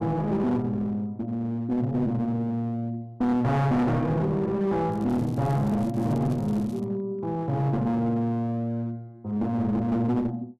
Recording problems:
distortion; hard clipping, uneven, signal-to-distortion ratio 6 dB
crackle; from 5 to 7 s; loose cable, SNR 27 dB

